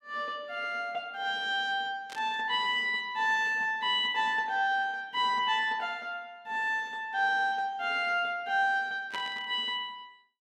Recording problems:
static burst; at 2 s and at 9 s; peak -8 dB vs average level

